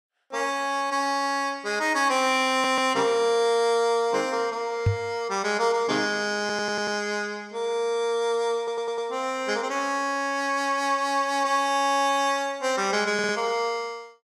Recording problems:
stutter; 4 times, first at 2.5 s
microphone bump; at 5 s; peak +5 dB vs average level

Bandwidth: 15.5 kHz